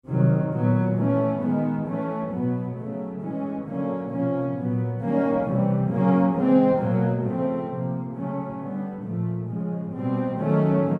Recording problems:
none

